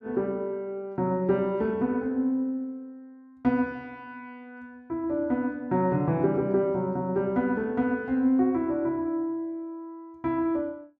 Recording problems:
none

